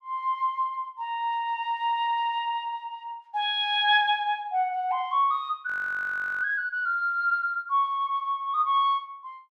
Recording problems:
frozen audio; at 5.5 s for 0.5 s

